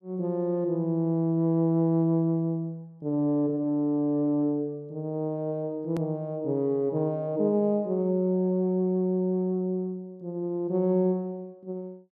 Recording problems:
hard cut with a click; at 6 s

